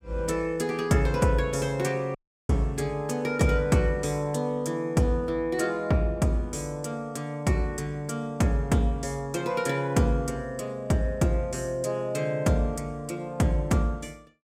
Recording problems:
audio cutting out; at 2 s

